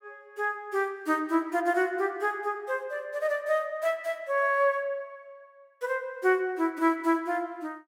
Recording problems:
none

